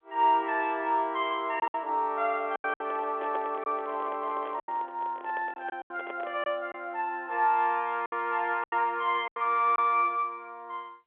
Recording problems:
telephone audio; 300 Hz to 3.5 kHz, G.711
packet loss; 7% of the sound replaced, filled with silence
microphone handling noise; from 2.5 to 6.5 s; peak -6 dB vs average level

